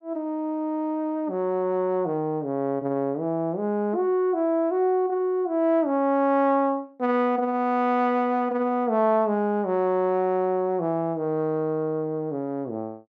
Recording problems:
none

